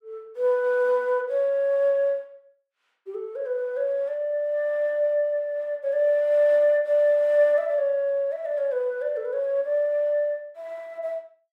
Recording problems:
none

